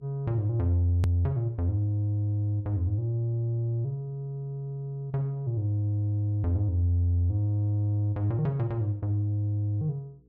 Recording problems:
electrical hum; 60 Hz, harmonics up to 480 Hz, SNR 33 dB
edit click; at 1 s

